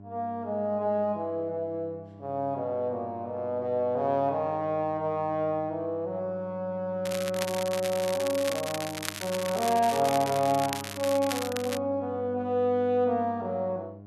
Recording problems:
electrical hum; 50 Hz, harmonics up to 800 Hz, SNR 17 dB
crackling; from 7 to 12 s; loose cable, SNR 8 dB

